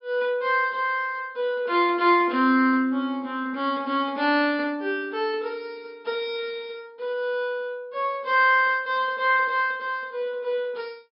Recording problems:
treble missing; nothing above 5.5 kHz

